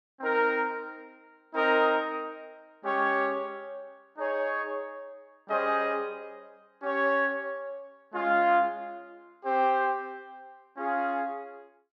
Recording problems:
none

